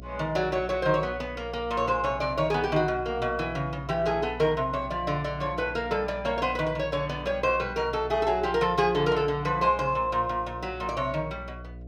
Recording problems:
hum; 60 Hz, harmonics up to 720 Hz, SNR 15 dB

